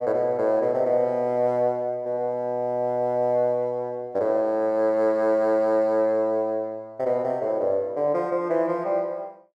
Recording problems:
none

